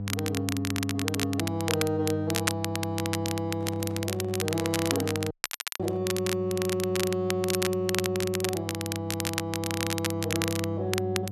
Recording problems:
hum; 50 Hz, harmonics up to 500 Hz, SNR 5 dB
crackling; vinyl, SNR 3 dB
microphone handling noise; from 3.5 to 6 s; peak -11 dB vs average level
audio cutting out; at 5.5 s

